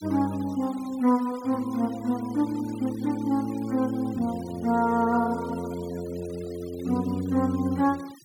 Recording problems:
noise reduction artefacts; signal-to-artefact ratio 21 dB

